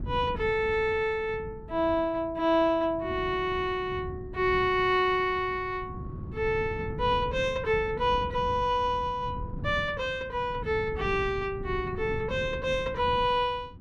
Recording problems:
wind on the microphone; below 180 Hz, SNR 12 dB

